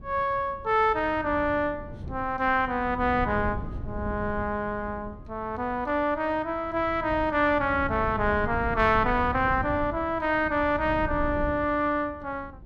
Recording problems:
wind noise; below 170 Hz, SNR 12 dB

